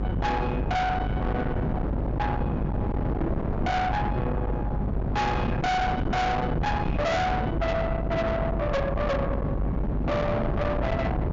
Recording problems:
treble missing; nothing above 7.3 kHz
distortion; soft clipping, signal-to-distortion ratio 6 dB
electrical hum; 50 Hz, harmonics up to 550 Hz, SNR 4 dB
wind noise; below 640 Hz, SNR 2 dB

